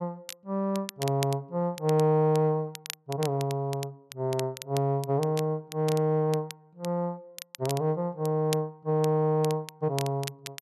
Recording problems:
crackle; vinyl, SNR 15 dB

